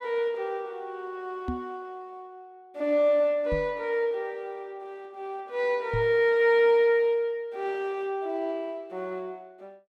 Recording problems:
knock on the microphone; at 1.5 s, at 3.5 s and at 6 s; peak -2 dB vs average level

